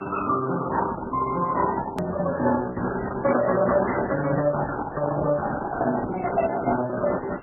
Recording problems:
codec artefacts; Opus, then MP3, log-spectral distance 7 dB, nothing above 2.7 kHz
hiss; SNR 27 dB
hard cut with a click; at 2 s

